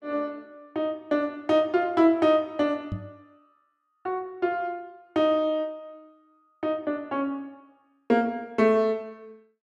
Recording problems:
microphone bump; at 3 s; peak -3 dB vs average level

